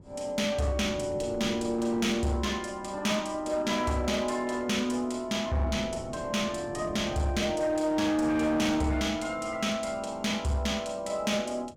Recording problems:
distortion; hard clipping, uneven, signal-to-distortion ratio 12 dB
wind noise; below 350 Hz, SNR 17 dB

